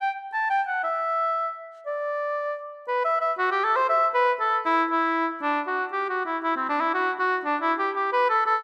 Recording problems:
none

